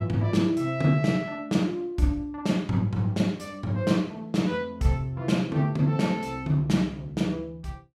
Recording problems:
none

